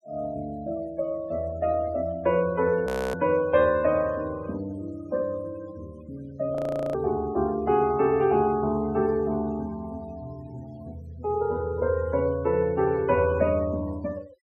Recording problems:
denoising artefacts; signal-to-artefact ratio 24 dB
audio freezing; at 3 s and at 6.5 s

